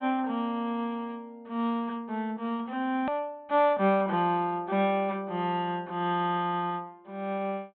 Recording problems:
low-pass filter; nothing above 4 kHz
click at an edit; at 3 s

